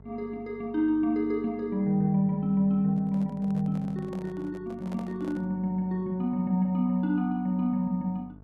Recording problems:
mains hum; 50 Hz, harmonics up to 1.1 kHz, SNR 24 dB
microphone handling noise; from 3 to 5.5 s; peak -11 dB vs average level

